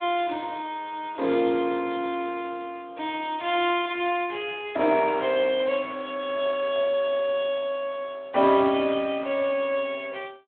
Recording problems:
phone line; 240 Hz to 3.5 kHz, Speex

